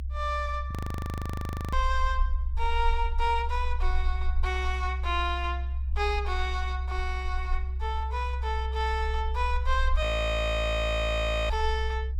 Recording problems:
rumble; below 66 Hz, SNR 1 dB
audio freezing; at 0.5 s for 1 s and at 10 s for 1.5 s

